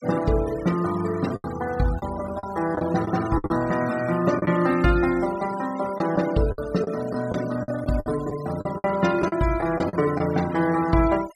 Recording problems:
denoising artefacts; signal-to-artefact ratio 16 dB
packet loss; 8% of the sound replaced, filled with the last packet

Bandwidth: 14 kHz